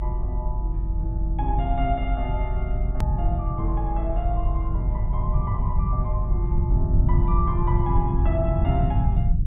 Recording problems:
treble cut off; nothing above 4 kHz
low-frequency rumble; below 100 Hz, SNR -7 dB
click at an edit; at 3 s

